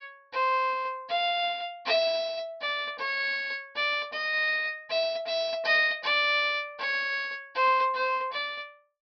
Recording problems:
treble cut off; nothing above 5.5 kHz

